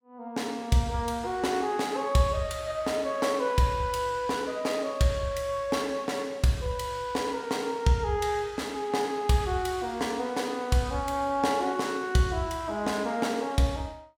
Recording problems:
none

